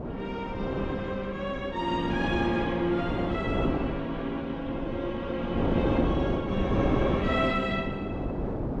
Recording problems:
wind noise; below 460 Hz, SNR 0 dB

